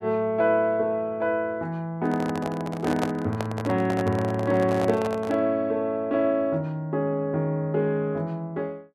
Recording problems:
microphone handling noise; from 2 to 5.5 s; peak +2 dB vs average level

